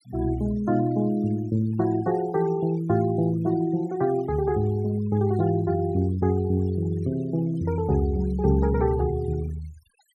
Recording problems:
noise reduction artefacts; signal-to-artefact ratio 23 dB

